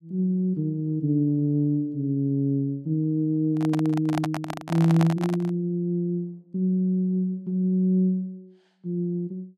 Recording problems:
microphone handling noise; from 3.5 to 5.5 s; peak 0 dB vs average level

